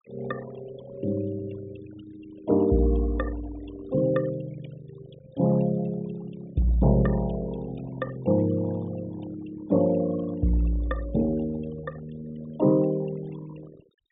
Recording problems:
treble missing; nothing above 4 kHz
denoising artefacts; signal-to-artefact ratio 19 dB

